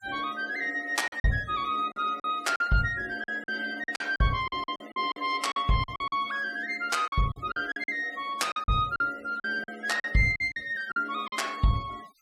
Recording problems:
denoising artefacts; signal-to-artefact ratio 22 dB
lost packets; 11% of the sound replaced, filled with silence

